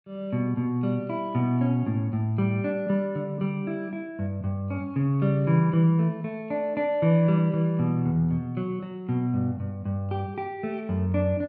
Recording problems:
none

